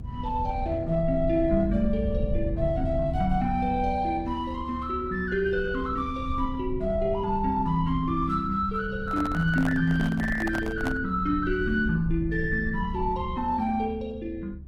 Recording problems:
lossy compression; Opus, log-spectral distance 2 dB
low-frequency rumble; below 98 Hz, SNR 9 dB
handling noise; from 9 to 11 s; peak -2 dB vs average level

